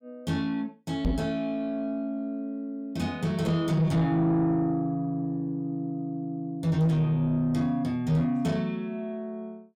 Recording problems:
distorted audio; soft clipping, signal-to-distortion ratio 10 dB
knock on the microphone; at 1 s; peak +5 dB vs average level

